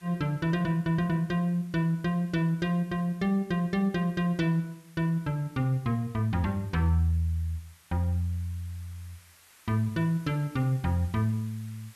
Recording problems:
background hiss; SNR 28 dB

